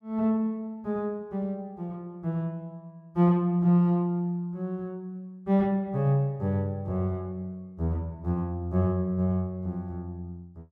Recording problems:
none

